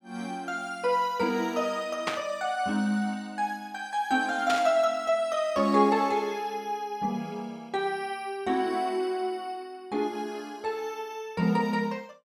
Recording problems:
burst of static; at 2 s and at 4.5 s; peak +3 dB vs average level

